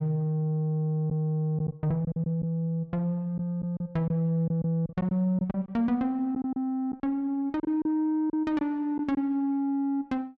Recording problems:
lost packets; 7% of the sound replaced, filled with silence

